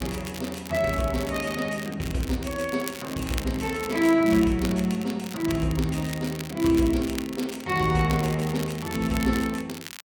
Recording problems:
crackle; vinyl, SNR 13 dB

